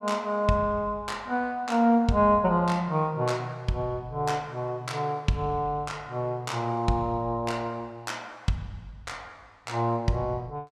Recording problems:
none

